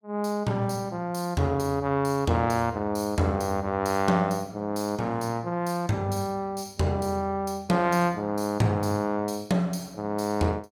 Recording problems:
none

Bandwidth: 18 kHz